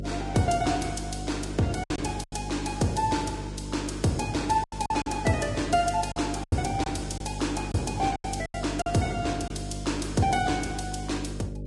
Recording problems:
codec artefacts; Vorbis, log-spectral distance 4 dB, nothing above 10.7 kHz
electrical hum; 50 Hz, harmonics up to 600 Hz, SNR 8 dB
lost packets; 6% of the sound replaced, filled with silence

